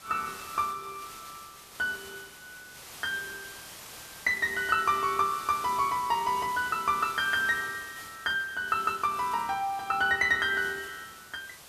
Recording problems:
hiss; slope -1 dB per octave, SNR 16 dB

